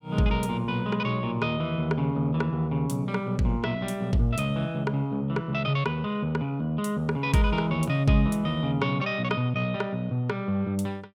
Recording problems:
none

